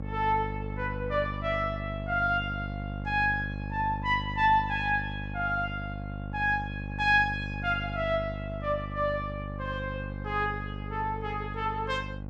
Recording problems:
hum; 50 Hz, harmonics up to 850 Hz, SNR 7 dB

